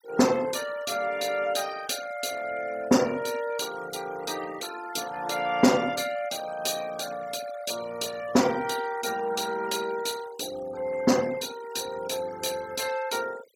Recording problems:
denoising artefacts; signal-to-artefact ratio 15 dB

